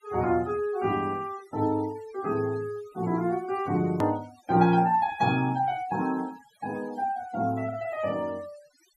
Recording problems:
denoising artefacts; signal-to-artefact ratio 21 dB
click at an edit; at 4 s

